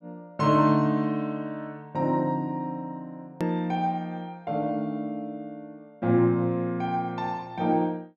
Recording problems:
hard cut with a click; at 3.5 s

